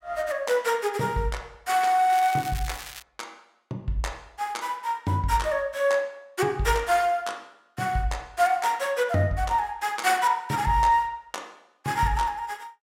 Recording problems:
crackling; at 2 s; loose cable, SNR 14 dB

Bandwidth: 16 kHz